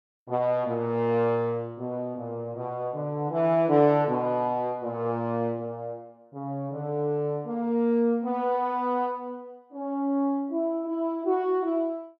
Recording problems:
none

